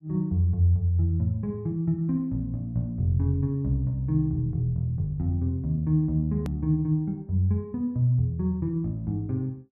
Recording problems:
edit click; at 6.5 s

